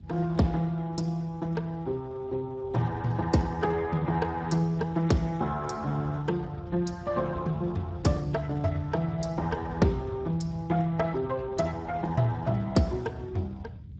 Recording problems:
lossy codec; Speex, log-spectral distance 3 dB, nothing above 7.3 kHz
rumble; below 150 Hz, SNR 14 dB

